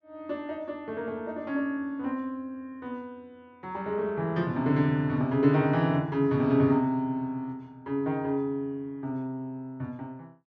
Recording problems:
none

